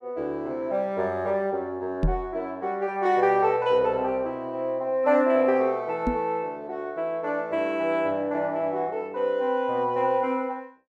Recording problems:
microphone bump; at 2 s and at 6 s; peak +4 dB vs average level

